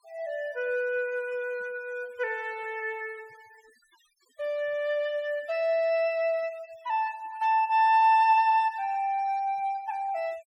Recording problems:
noise reduction artefacts; signal-to-artefact ratio 28 dB

